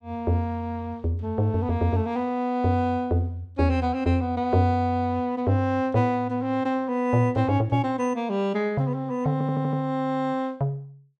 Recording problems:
audio stuttering; at 9.5 s

